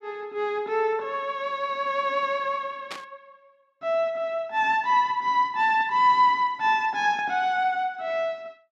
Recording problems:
static burst; at 3 s; peak -7 dB vs average level

